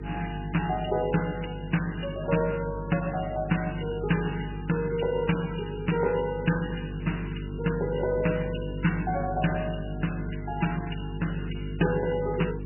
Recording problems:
codec artefacts; MP3, log-spectral distance 8 dB, nothing above 2.9 kHz
hum; 50 Hz, harmonics up to 450 Hz, SNR 7 dB
background hiss; SNR 27 dB

